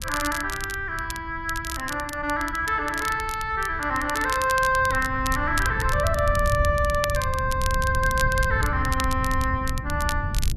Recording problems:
low-frequency rumble; below 100 Hz, SNR 6 dB
crackling; vinyl, SNR 11 dB

